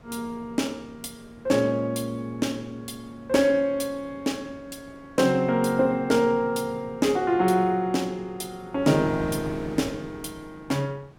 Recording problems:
wind noise; below 640 Hz, SNR 20 dB

